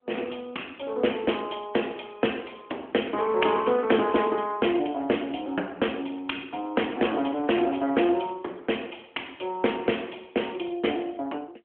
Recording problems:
telephone audio; 240 Hz to 3.3 kHz, AMR-NB

